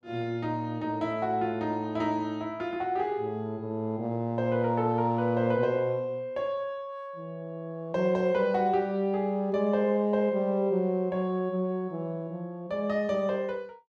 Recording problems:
none

